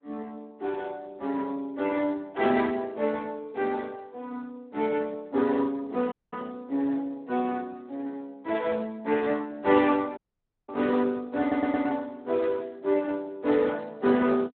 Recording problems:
telephone audio; 220 Hz to 3.6 kHz, Speex
audio cutting out; at 6 s and at 10 s for 0.5 s
audio stuttering; at 11 s

